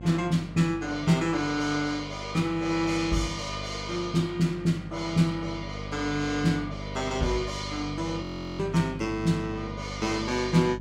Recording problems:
hum; 50 Hz, harmonics up to 800 Hz, SNR 12 dB
frozen audio; at 8 s

